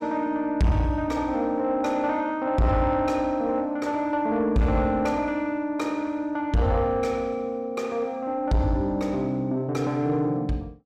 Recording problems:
distortion; soft clipping, signal-to-distortion ratio 10 dB

